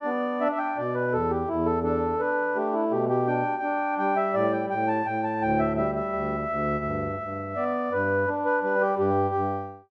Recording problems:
none

